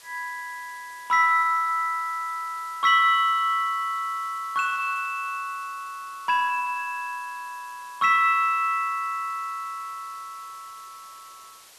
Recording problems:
hiss; slope +1 dB per octave, SNR 24 dB

